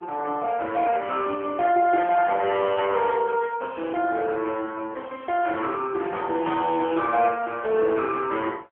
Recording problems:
phone line; 280 Hz to 3.3 kHz, AMR-NB

